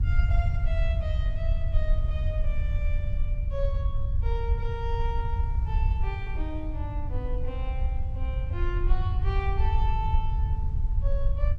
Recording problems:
rumble; below 76 Hz, SNR -9 dB
wind noise; below 660 Hz, SNR 19 dB

